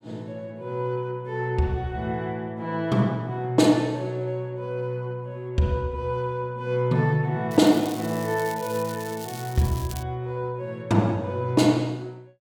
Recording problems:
crackle; from 7.5 to 10 s; loose cable, SNR 15 dB

